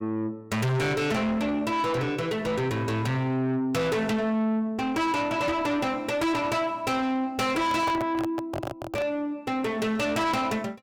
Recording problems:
distortion; soft clipping, signal-to-distortion ratio 7 dB
handling noise; from 7.5 to 9 s; peak 0 dB vs average level

